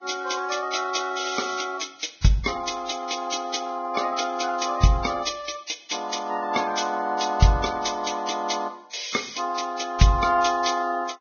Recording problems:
lossy codec; Vorbis, log-spectral distance 7 dB, nothing above 6.5 kHz

